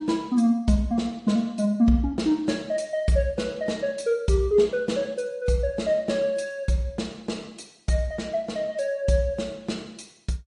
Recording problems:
lossy compression; MP3, log-spectral distance 2 dB, nothing above 10.1 kHz

